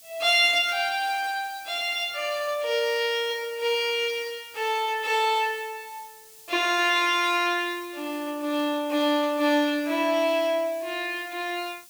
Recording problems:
hiss; SNR 21 dB

